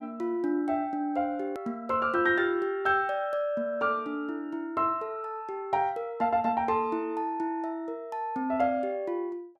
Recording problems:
click at an edit; at 1.5 s

